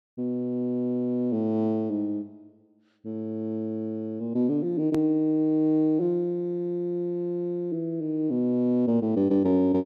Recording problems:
hard cut with a click; at 5 s

